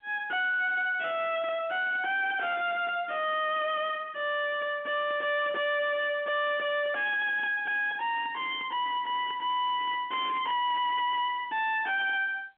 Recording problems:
telephone audio; 240 Hz to 3.3 kHz, G.711
distorted audio; soft clipping, signal-to-distortion ratio 6 dB

